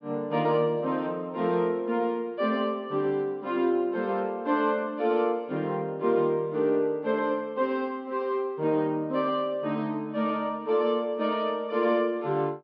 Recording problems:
treble missing; nothing above 5.5 kHz

